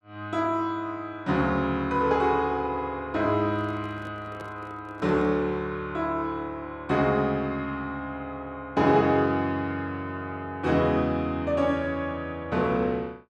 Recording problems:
handling noise; from 3.5 to 5.5 s; peak -10 dB vs average level

